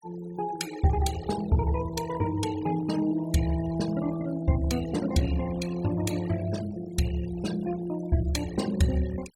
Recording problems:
noise reduction artefacts; signal-to-artefact ratio 14 dB

